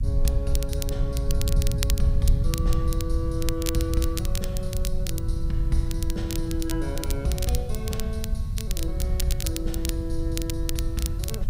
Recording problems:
hiss; slope -2 dB per octave, SNR 27 dB
rumble; below 86 Hz, SNR -3 dB
crackle; vinyl, SNR 5 dB

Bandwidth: 15.5 kHz